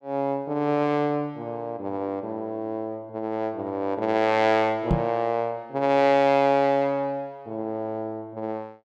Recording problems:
microphone thump; at 5 s; peak +5 dB vs average level

